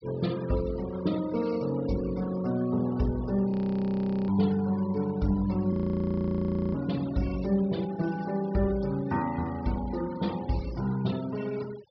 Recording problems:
treble missing; nothing above 5.5 kHz
denoising artefacts; signal-to-artefact ratio 19 dB
audio freezing; at 3.5 s for 1 s and at 5.5 s for 1 s

